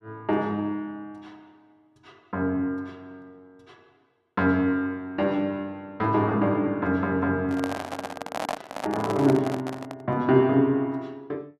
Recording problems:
handling noise; from 7.5 to 10 s; peak 0 dB vs average level

